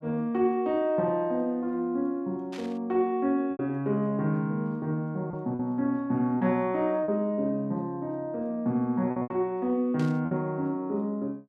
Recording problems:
packet loss; 3% of the sound replaced, filled with repeated pitch periods
static burst; at 2.5 s and at 10 s; peak -12 dB vs average level

